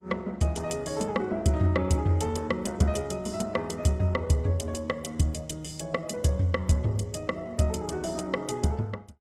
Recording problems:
lossy compression; Opus, log-spectral distance 3 dB, nothing above 18.3 kHz

